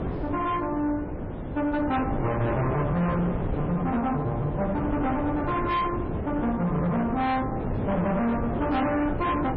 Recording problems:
codec artefacts; MP3, log-spectral distance 2 dB, nothing above 4.2 kHz
distorted audio; soft clipping, signal-to-distortion ratio 7 dB
wind on the microphone; below 500 Hz, SNR 4 dB

